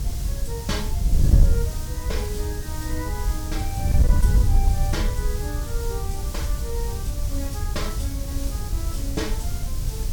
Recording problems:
distortion; hard clipping, signal-to-distortion ratio 12 dB
hum; 60 Hz, harmonics up to 720 Hz, SNR 25 dB
hiss; SNR 3 dB
low-frequency rumble; below 74 Hz, strongest tone 48 Hz, SNR 7 dB
wind on the microphone; below 82 Hz, SNR -9 dB

